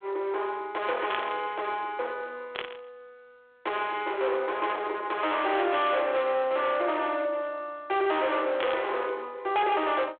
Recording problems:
phone line; 320 Hz to 3.9 kHz, G.726
distorted audio; hard clipping, uneven, signal-to-distortion ratio 7 dB
static burst; at 1 s, at 2.5 s and at 8.5 s; peak -1 dB vs average level

